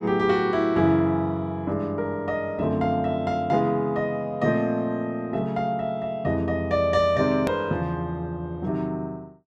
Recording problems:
click at an edit; at 7.5 s

